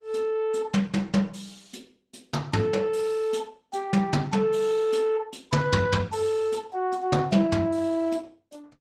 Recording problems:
lossy codec; Opus, log-spectral distance 3 dB, nothing above 15.5 kHz

